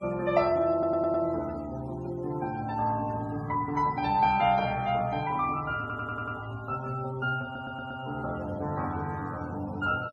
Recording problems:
denoising artefacts; signal-to-artefact ratio 20 dB
stutter; at 0.5 s, at 6 s and at 7.5 s

